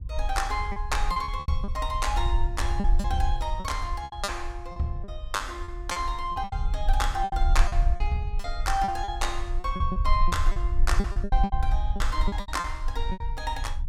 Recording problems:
rumble; below 52 Hz, SNR 0 dB
lost packets; 13% of the sound replaced, filled with repeated pitch periods

